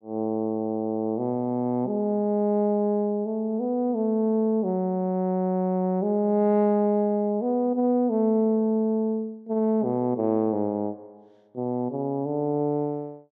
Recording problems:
none

